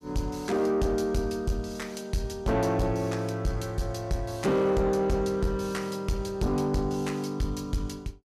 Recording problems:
distortion; soft clipping, signal-to-distortion ratio 11 dB

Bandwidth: 14.5 kHz